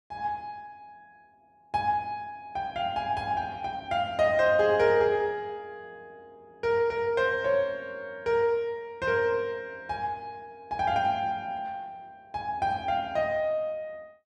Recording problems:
none

